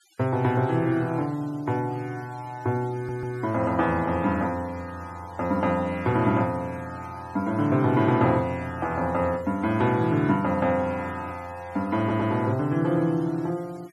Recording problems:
noise reduction artefacts; signal-to-artefact ratio 26 dB
stutter; at 3 s and at 12 s

